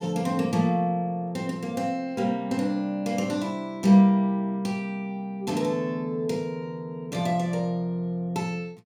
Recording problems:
none

